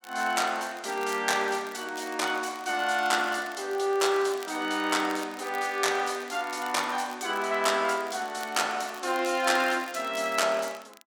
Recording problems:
crackle; vinyl, SNR 20 dB

